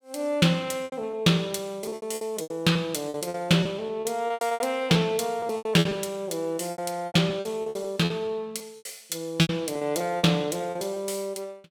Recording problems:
lost packets; 16% of the sound replaced, filled with repeated pitch periods

